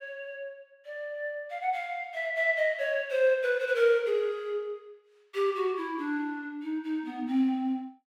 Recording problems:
none

